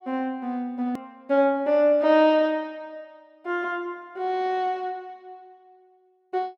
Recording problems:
edit click; at 1 s

